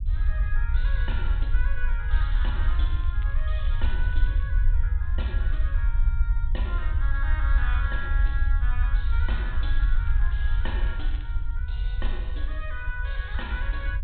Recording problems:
treble cut off; nothing above 4 kHz
low-frequency rumble; below 58 Hz, SNR -11 dB
crackle; from 2 to 4.5 s and from 9.5 to 11 s; loose cable, SNR 20 dB

